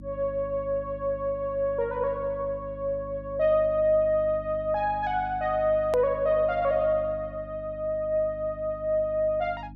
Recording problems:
electrical hum; 50 Hz, harmonics up to 300 Hz, SNR 17 dB
hard cut with a click; at 6 s

